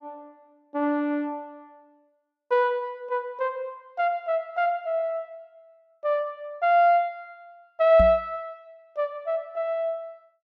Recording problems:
microphone thump; at 8 s; peak +2 dB vs average level

